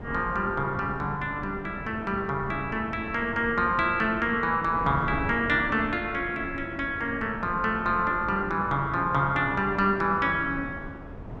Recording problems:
wind on the microphone; below 420 Hz, SNR 13 dB

